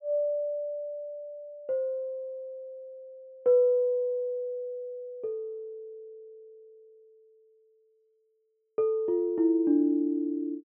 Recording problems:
treble cut off; nothing above 3.1 kHz

